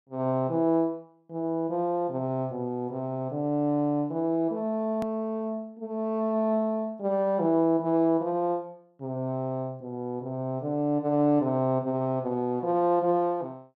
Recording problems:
hard cut with a click; at 5 s

